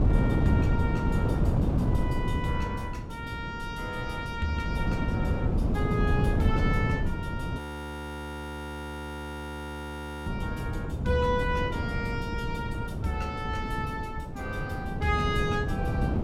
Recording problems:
wind noise; below 230 Hz, SNR -3 dB
audio freezing; at 7.5 s for 2.5 s

